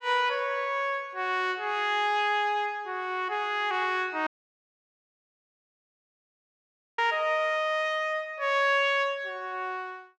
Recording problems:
dropout; at 4.5 s for 2.5 s

